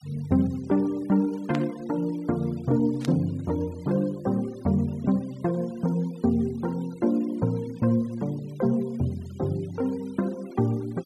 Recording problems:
noise reduction artefacts; signal-to-artefact ratio 26 dB
static burst; at 1.5 s and at 3 s; peak -5 dB vs average level

